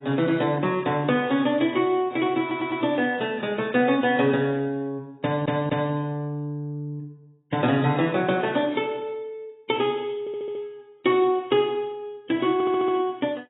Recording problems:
lossy compression; AAC, log-spectral distance 2 dB, nothing above 3.8 kHz
stutter; 4 times, first at 2.5 s

